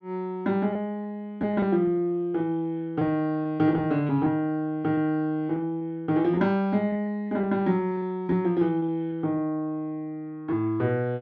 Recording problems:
packet loss; 8% of the sound replaced, filled with repeated pitch periods

